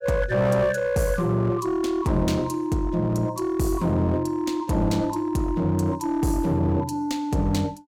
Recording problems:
distorted audio; hard clipping, uneven, signal-to-distortion ratio 11 dB

